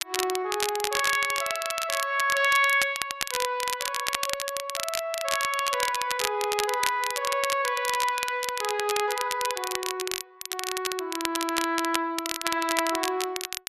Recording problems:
crackle; vinyl, SNR 4 dB

